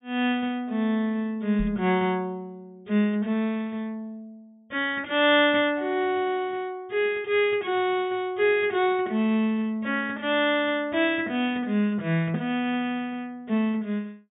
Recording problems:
low-pass filter; nothing above 4 kHz
microphone bump; at 1.5 s; peak -4 dB vs average level

